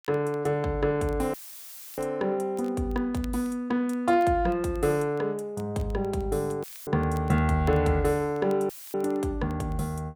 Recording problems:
crackle; vinyl, SNR 30 dB
dropout; at 1.5 s for 0.5 s, at 6.5 s and at 8.5 s; filled with static

